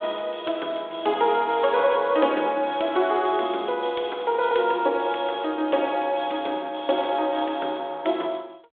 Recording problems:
phone line; 280 Hz to 3.6 kHz, G.726

